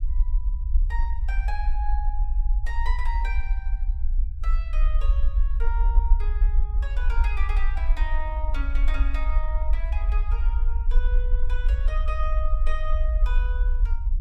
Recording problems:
low-frequency rumble; below 50 Hz, SNR -11 dB

